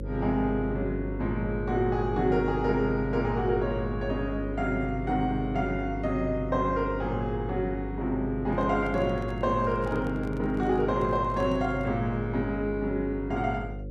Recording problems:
hum; 50 Hz, harmonics up to 550 Hz, SNR 8 dB
handling noise; from 8.5 to 12 s; peak -7 dB vs average level

